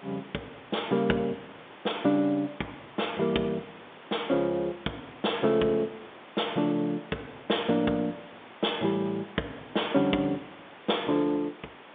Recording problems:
telephone audio; 240 Hz to 3.6 kHz, G.711
hiss; SNR 19 dB

